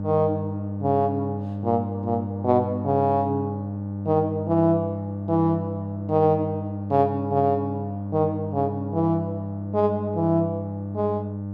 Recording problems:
electrical hum; 50 Hz, harmonics up to 900 Hz, SNR 6 dB

